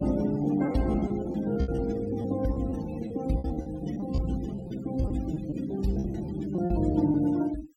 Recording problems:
noise reduction artefacts; signal-to-artefact ratio 16 dB
packet loss; 11% of the sound replaced, filled with repeated pitch periods

